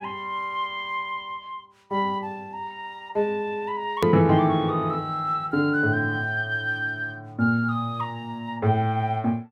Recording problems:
click at an edit; at 4 s

